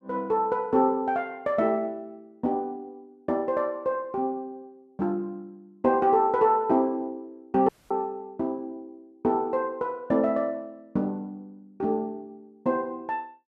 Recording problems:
dropout; at 7.5 s

